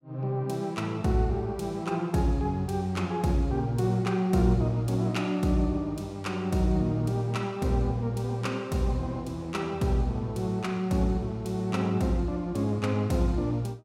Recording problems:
none

